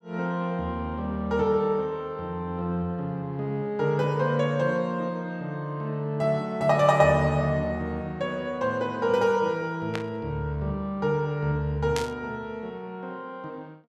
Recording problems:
burst of static; at 10 s and at 12 s; peak -1 dB vs average level

